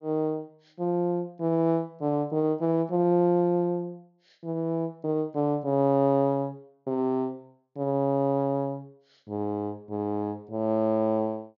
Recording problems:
treble cut off; nothing above 6.9 kHz

